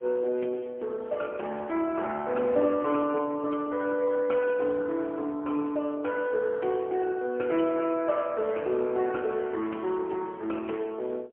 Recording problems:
phone line; 260 Hz to 2.5 kHz, AMR-NB, then MP3

